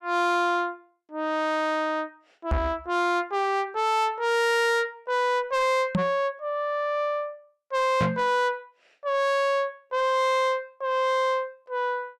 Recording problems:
distortion; soft clipping, signal-to-distortion ratio 8 dB
knock on the microphone; at 2.5 s, at 6 s and at 8 s; peak +5 dB vs average level

